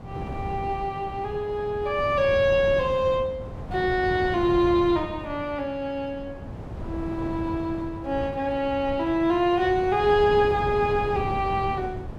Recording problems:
wind noise; below 330 Hz, SNR 11 dB

